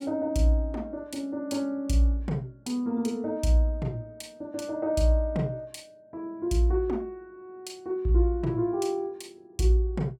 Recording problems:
none

